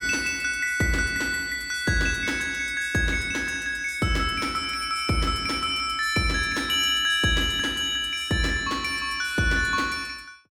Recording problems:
none

